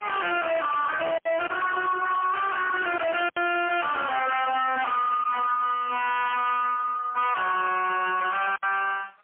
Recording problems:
phone line; 280 Hz to 3.3 kHz, AMR-NB, then MP3
distorted audio; soft clipping, signal-to-distortion ratio 5 dB
lost packets; 3% of the sound replaced, filled with silence

